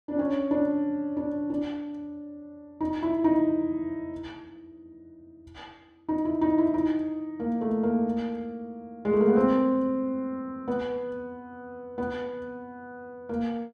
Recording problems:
none

